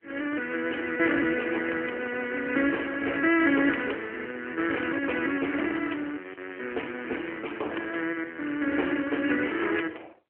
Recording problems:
phone line; 260 Hz to 3.1 kHz, AMR-NB
crackling; at 0.5 s and from 5 to 8 s; loose cable, SNR 26 dB

